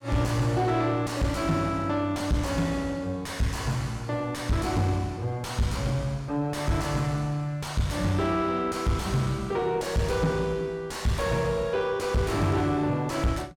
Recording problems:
distorted audio; soft clipping, signal-to-distortion ratio 5 dB

